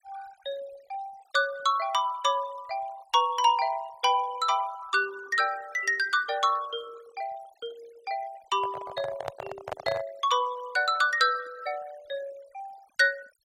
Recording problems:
noise reduction artefacts; signal-to-artefact ratio 22 dB
handling noise; from 8.5 to 10 s; peak -2 dB vs average level

